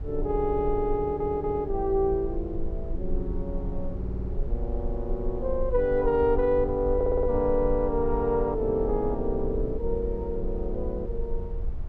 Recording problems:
low-frequency rumble; below 58 Hz, SNR 8 dB
audio stuttering; at 1 s, at 4 s and at 7 s

